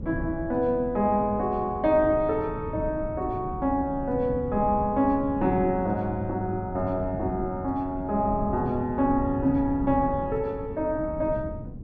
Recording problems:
wind on the microphone; below 190 Hz, SNR 10 dB

